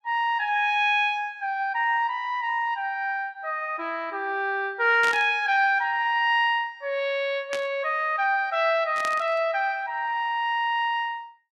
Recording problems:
static burst; at 5 s, at 7.5 s and at 9 s; peak -4 dB vs average level

